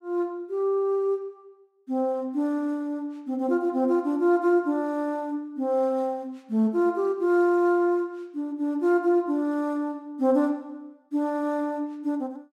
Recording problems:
none

